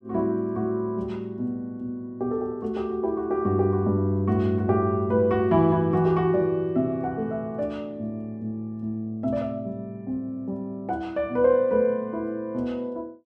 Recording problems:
none

